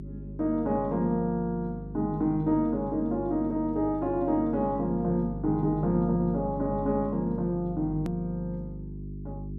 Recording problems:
electrical hum; 50 Hz, harmonics up to 400 Hz, SNR 10 dB
edit click; at 8 s

